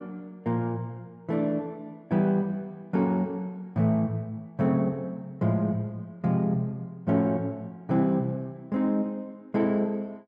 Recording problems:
none

